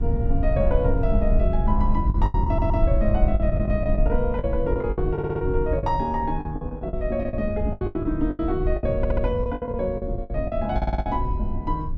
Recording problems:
rumble; below 76 Hz, SNR 0 dB
packet loss; 13% of the sound replaced, filled with the last packet
stutter; 4 times, first at 2.5 s

